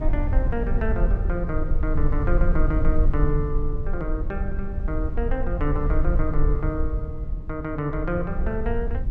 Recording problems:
low-frequency rumble; below 58 Hz, strongest tone 18 Hz, SNR -2 dB

